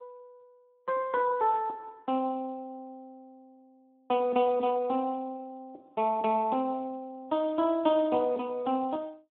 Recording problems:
telephone audio; 220 Hz to 3.5 kHz, Speex

